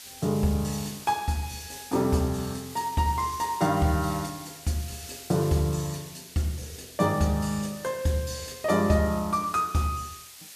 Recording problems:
background hiss; slope +3 dB per octave, SNR 15 dB

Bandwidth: 14.5 kHz